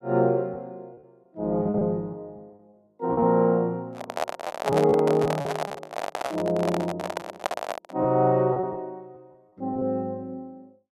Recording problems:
lost packets; 6% of the sound replaced, filled with repeated pitch periods
microphone handling noise; from 4 to 8 s; peak +3 dB vs average level

